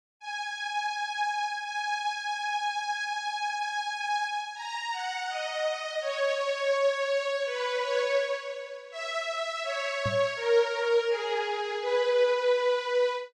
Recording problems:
microphone thump; at 10 s; peak -2 dB vs average level

